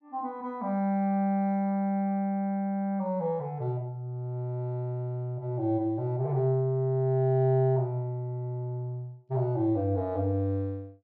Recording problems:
none

